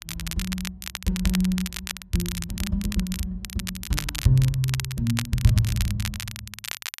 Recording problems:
crackle; vinyl, SNR 8 dB

